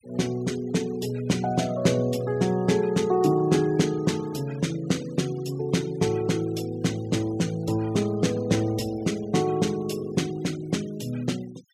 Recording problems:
denoising artefacts; signal-to-artefact ratio 22 dB

